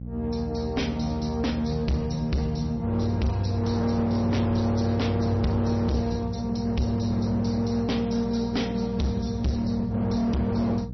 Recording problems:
lossy codec; MP3, log-spectral distance 3 dB, nothing above 5.8 kHz
distorted audio; hard clipping, uneven, signal-to-distortion ratio 6 dB
electrical hum; 60 Hz, harmonics up to 540 Hz, SNR 10 dB

